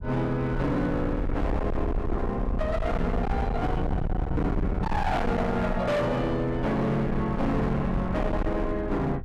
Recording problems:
distortion; hard clipping, signal-to-distortion ratio 6 dB
low-frequency rumble; below 150 Hz, SNR 5 dB

